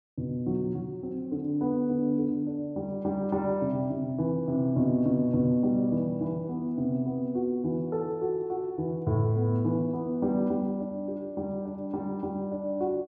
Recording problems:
none

